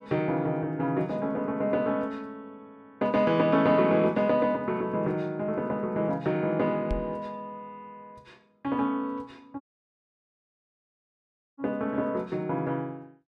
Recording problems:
knock on the microphone; at 7 s; peak -2 dB vs average level
dropout; at 9.5 s for 2 s

